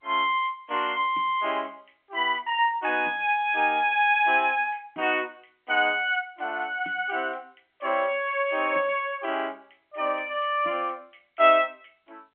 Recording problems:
phone line; 220 Hz to 3.2 kHz, G.711

